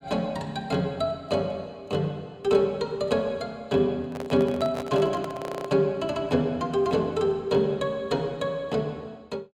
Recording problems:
microphone handling noise; from 4 to 5.5 s; peak -4 dB vs average level
stutter; at 5.5 s

